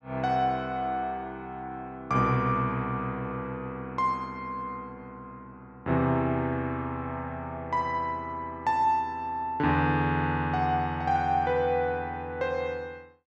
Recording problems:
none

